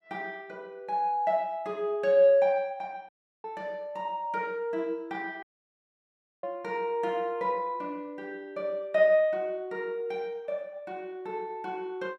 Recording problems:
dropout; at 3 s and at 5.5 s for 1 s

